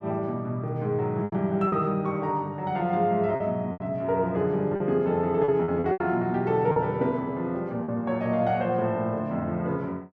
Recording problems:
packet loss; 6% of the sound replaced, filled with repeated pitch periods

